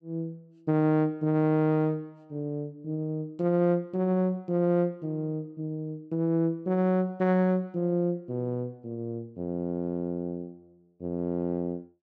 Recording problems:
none

